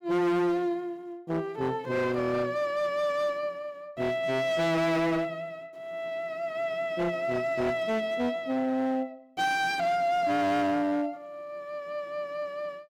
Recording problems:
distorted audio; hard clipping, signal-to-distortion ratio 8 dB

